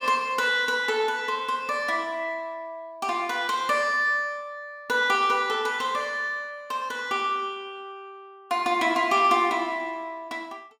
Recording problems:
none

